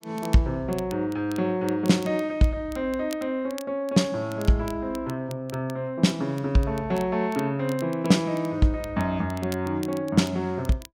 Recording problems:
crackling; vinyl, SNR 21 dB

